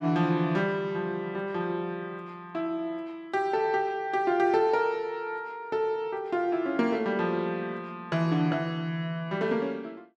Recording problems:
none

